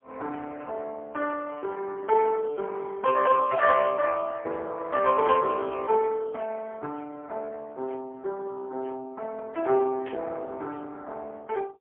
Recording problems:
phone line; 300 Hz to 2.6 kHz, AMR-NB, then MP3
burst of static; at 10 s; peak -9 dB vs average level

